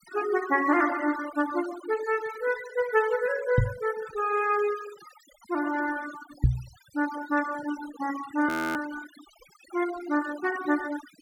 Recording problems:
denoising artefacts; signal-to-artefact ratio 14 dB
knock on the microphone; at 3.5 s and at 6.5 s; peak +10 dB vs average level
frozen audio; at 8.5 s

